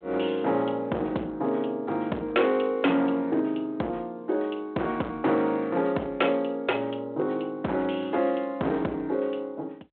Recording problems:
telephone audio; 220 Hz to 3.4 kHz, G.726
distorted audio; hard clipping, signal-to-distortion ratio 11 dB

